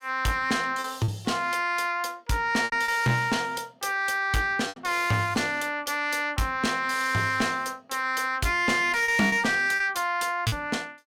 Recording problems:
distortion; soft clipping, signal-to-distortion ratio 7 dB
lost packets; 4% of the sound replaced, filled with repeated pitch periods

